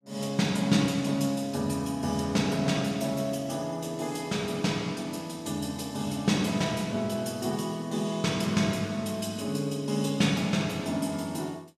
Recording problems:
none

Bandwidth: 14.5 kHz